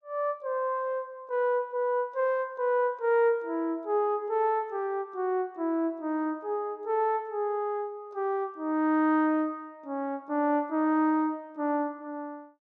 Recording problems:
none

